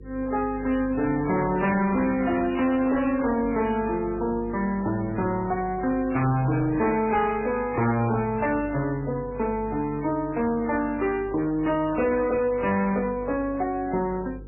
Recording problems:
lossy compression; MP3, then MP3, log-spectral distance 3 dB, nothing above 2.8 kHz
distortion; hard clipping, uneven, signal-to-distortion ratio 11 dB
mains hum; 50 Hz, harmonics up to 500 Hz, SNR 18 dB

